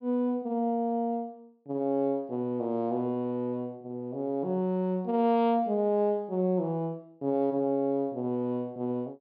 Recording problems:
treble missing; nothing above 5.5 kHz

